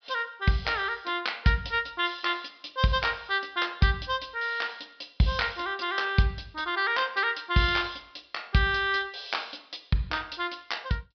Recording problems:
low-pass filter; nothing above 5.5 kHz

